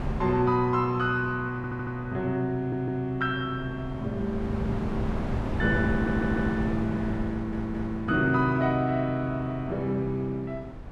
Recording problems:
wind on the microphone; below 370 Hz, SNR 7 dB
audio stuttering; 4 times, first at 1.5 s

